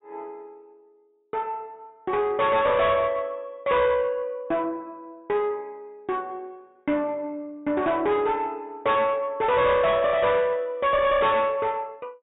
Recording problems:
low-pass filter; nothing above 4 kHz
distortion; soft clipping, signal-to-distortion ratio 10 dB

